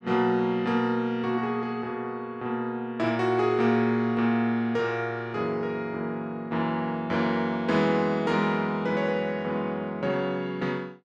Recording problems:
none

